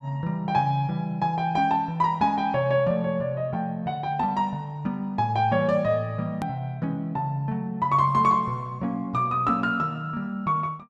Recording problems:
click at an edit; at 6.5 s

